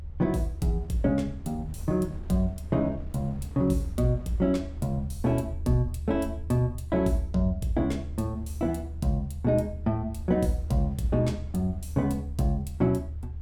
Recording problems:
low-frequency rumble; below 76 Hz, strongest tone 74 Hz, SNR 10 dB
wind on the microphone; below 390 Hz, SNR 26 dB

